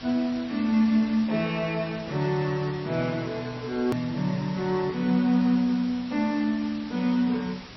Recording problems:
lossy codec; MP3, log-spectral distance 6 dB, nothing above 16.1 kHz
hiss; slope -2 dB per octave, SNR 17 dB
hard cut with a click; at 4 s

